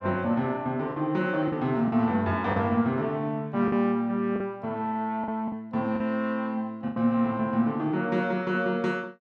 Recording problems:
packet loss; 5% of the sound replaced, filled with the last packet

